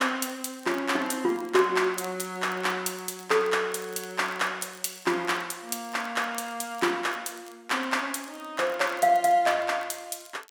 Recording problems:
crackling; vinyl, SNR 24 dB

